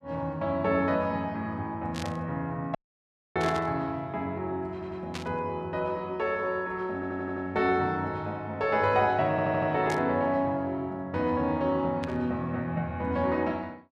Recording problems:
burst of static; 5 times, first at 2 s; peak -4 dB vs average level
audio cutting out; at 3 s for 0.5 s
audio stuttering; at 4.5 s, at 7 s and at 9.5 s

